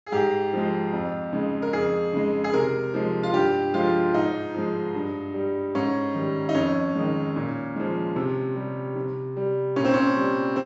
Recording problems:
treble missing; nothing above 8 kHz

